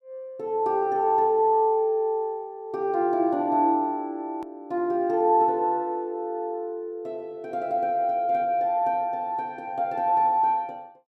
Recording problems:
hard cut with a click; at 4.5 s

